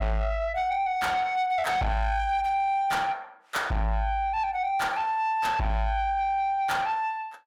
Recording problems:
distorted audio; soft clipping, signal-to-distortion ratio 7 dB

